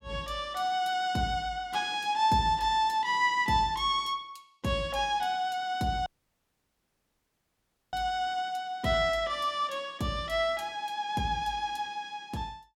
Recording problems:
dropout; at 6 s for 2 s

